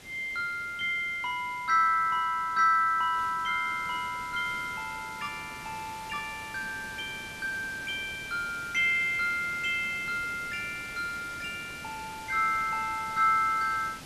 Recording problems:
hiss; slope -2 dB per octave, SNR 16 dB

